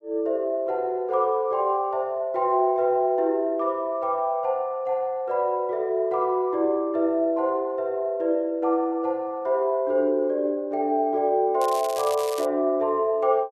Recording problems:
crackling; at 12 s; loose cable, SNR 15 dB

